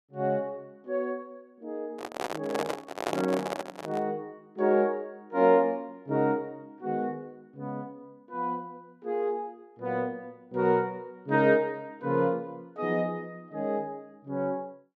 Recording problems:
microphone handling noise; from 2 to 4 s; peak +3 dB vs average level

